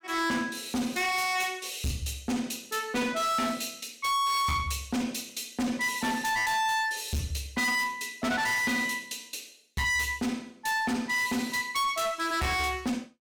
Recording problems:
distortion; hard clipping, signal-to-distortion ratio 6 dB

